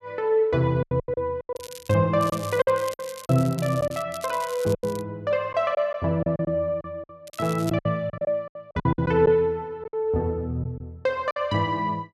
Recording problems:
lost packets; 11% of the sound replaced, filled with silence
crackle; 4 times, first at 1.5 s; loose cable, SNR 17 dB

